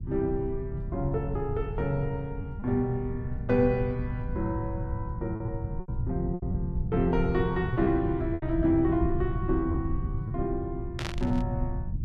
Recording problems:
rumble; below 130 Hz, SNR 4 dB
packet loss; 4% of the sound replaced, filled with repeated pitch periods
burst of static; at 11 s; peak -1 dB vs average level

